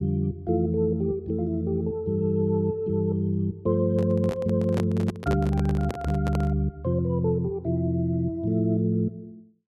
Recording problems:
microphone handling noise; from 4 to 6.5 s; peak -2 dB vs average level

